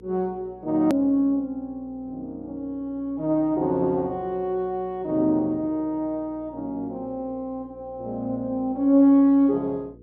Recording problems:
hum; 60 Hz, harmonics up to 480 Hz, SNR 25 dB
edit click; at 1 s

